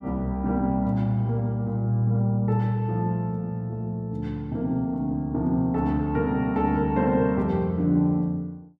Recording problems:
none

